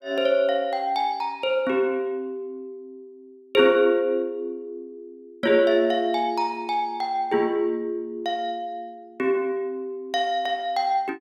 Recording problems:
none

